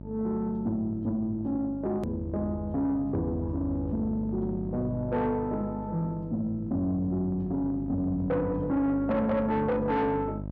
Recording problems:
distortion; soft clipping, signal-to-distortion ratio 12 dB
electrical hum; 50 Hz, harmonics up to 700 Hz, SNR 9 dB
hard cut with a click; at 2 s

